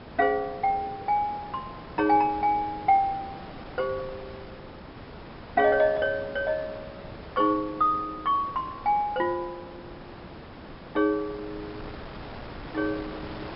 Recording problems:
treble cut off; nothing above 5.3 kHz
hiss; slope -7 dB per octave, SNR 20 dB
wind noise; below 1.4 kHz, SNR 17 dB

